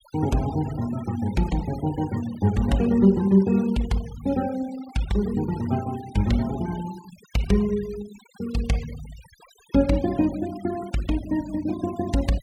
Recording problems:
denoising artefacts; signal-to-artefact ratio 19 dB

